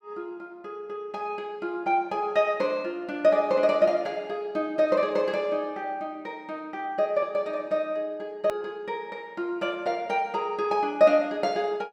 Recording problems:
click at an edit; at 8.5 s

